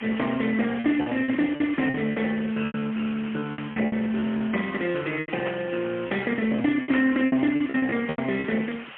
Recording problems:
telephone audio; 300 Hz to 3.3 kHz, AMR-NB, then MP3
distorted audio; soft clipping, signal-to-distortion ratio 22 dB
background hiss; SNR 14 dB
packet loss; 13% of the sound replaced, filled with repeated pitch periods
burst of static; at 3.5 s, at 5.5 s and at 7 s; peak -2 dB vs average level

